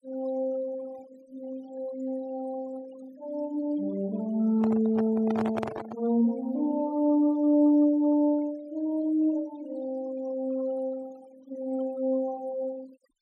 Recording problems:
denoising artefacts; signal-to-artefact ratio 23 dB
microphone handling noise; from 4.5 to 6 s; peak -1 dB vs average level

